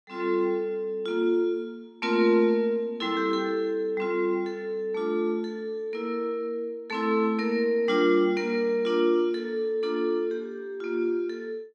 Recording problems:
none

